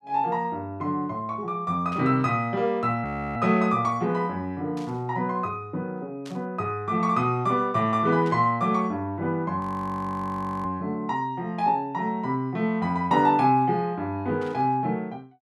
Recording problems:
static burst; 5 times, first at 2 s; peak -14 dB vs average level
audio freezing; at 3 s and at 9.5 s for 1 s

